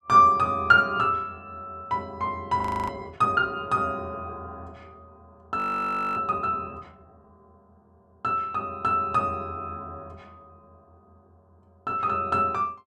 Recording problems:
audio freezing; at 2.5 s and at 5.5 s for 0.5 s

